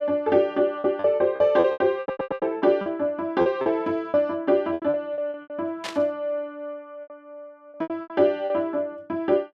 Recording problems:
lost packets; 13% of the sound replaced, filled with repeated pitch periods
audio stuttering; at 2 s
static burst; at 6 s; peak -4 dB vs average level

